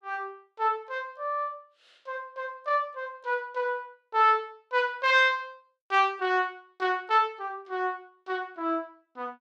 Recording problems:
none

